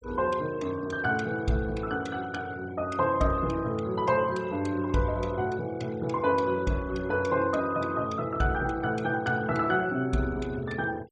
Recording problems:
noise reduction artefacts; signal-to-artefact ratio 22 dB

